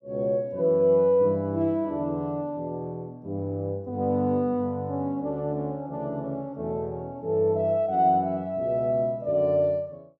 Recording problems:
none

